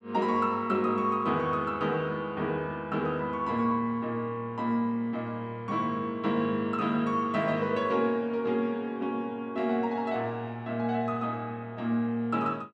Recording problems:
none

